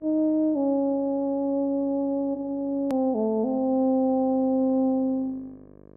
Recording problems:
electrical hum; 50 Hz, harmonics up to 1.3 kHz, SNR 27 dB
click at an edit; at 3 s

